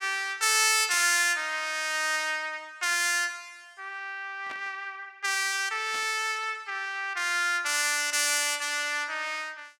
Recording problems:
static burst; at 1 s, at 4.5 s and at 6 s; peak -11 dB vs average level

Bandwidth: 17.5 kHz